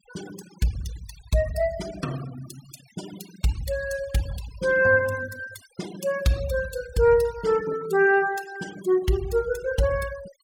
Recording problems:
denoising artefacts; signal-to-artefact ratio 16 dB

